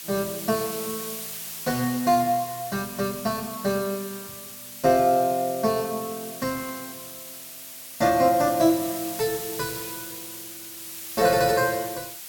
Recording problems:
background hiss; slope +2 dB per octave, SNR 10 dB

